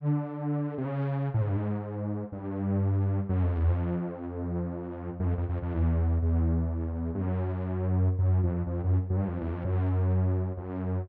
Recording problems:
none

